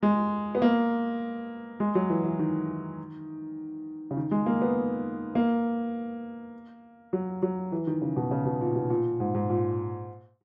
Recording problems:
none

